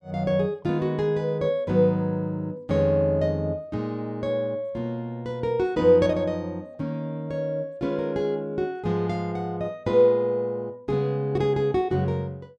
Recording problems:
none

